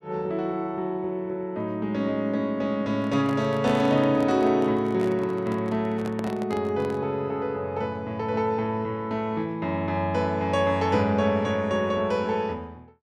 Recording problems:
microphone handling noise; from 3 to 7 s; peak -6 dB vs average level

